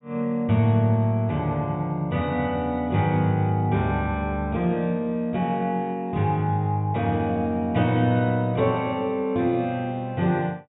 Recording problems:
low-pass filter; nothing above 3.7 kHz

